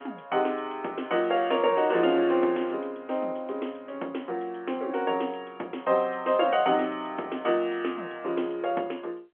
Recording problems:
telephone audio; 240 Hz to 3.2 kHz, G.711

